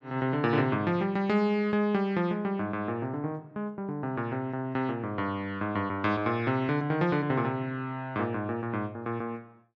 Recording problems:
none

